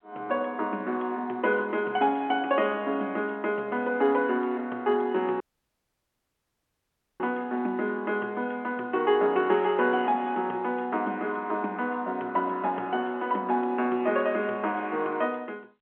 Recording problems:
telephone audio; 260 Hz to 3.4 kHz, G.711
dropout; at 5.5 s for 2 s

